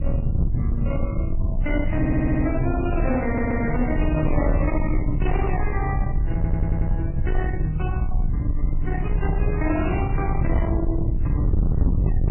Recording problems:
codec artefacts; MP3, then AAC, log-spectral distance 2 dB, nothing above 2.8 kHz
distortion; soft clipping, signal-to-distortion ratio 7 dB
low-frequency rumble; below 120 Hz, SNR -1 dB
stutter; at 2 s, at 3.5 s and at 6.5 s

